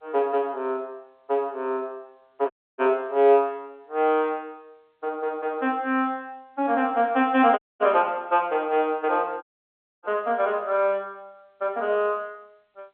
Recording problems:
telephone audio; 260 Hz to 3.5 kHz, G.711
dropout; at 2.5 s, at 7.5 s and at 9.5 s for 0.5 s

